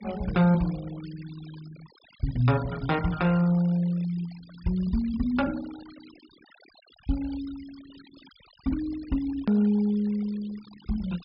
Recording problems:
treble cut off; nothing above 5.5 kHz
noise reduction artefacts; signal-to-artefact ratio 22 dB
hard cut with a click; at 9.5 s

